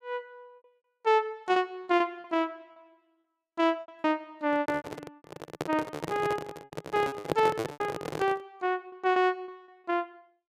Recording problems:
packet loss; 11% of the sound replaced, filled with repeated pitch periods
microphone handling noise; from 4.5 to 8.5 s; peak +5 dB vs average level

